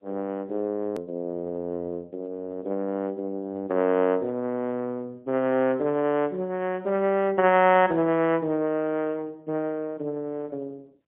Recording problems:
phone line; 260 Hz to 3.3 kHz, AMR-NB, then MP3
hard cut with a click; at 1 s

